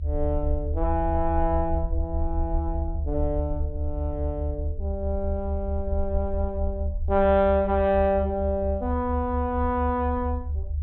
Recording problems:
treble cut off; nothing above 4.1 kHz
rumble; below 76 Hz, SNR 3 dB

